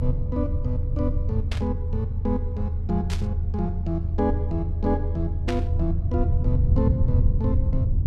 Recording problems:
rumble; below 94 Hz, SNR -4 dB
burst of static; at 1.5 s, at 3 s and at 5.5 s; peak +1 dB vs average level

